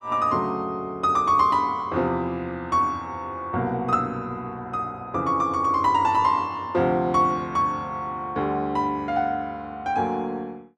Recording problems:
none

